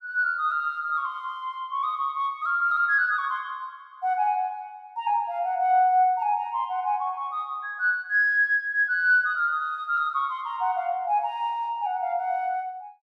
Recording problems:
none

